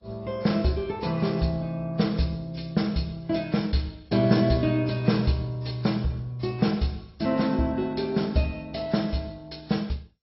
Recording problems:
codec artefacts; MP2, then AAC, log-spectral distance 4 dB, nothing above 5.5 kHz

